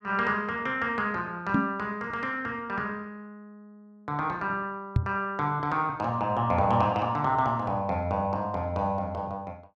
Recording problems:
microphone thump; at 1.5 s and at 5 s; peak +8 dB vs average level

